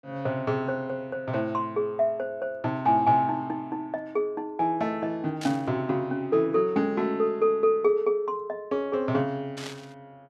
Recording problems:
burst of static; at 5.5 s and at 9.5 s; peak -7 dB vs average level

